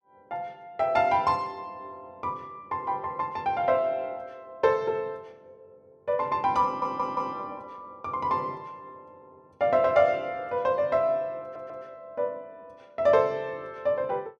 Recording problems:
stutter; at 6.5 s and at 11 s

